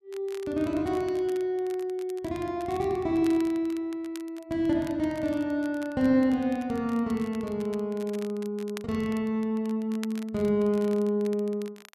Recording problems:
crackle; vinyl, SNR 22 dB

